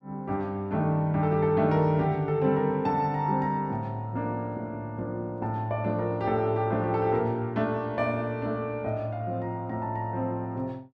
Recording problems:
none

